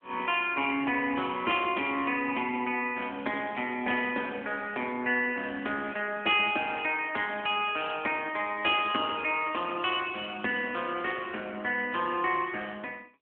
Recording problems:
telephone audio; 220 Hz to 3.3 kHz, AMR-NB

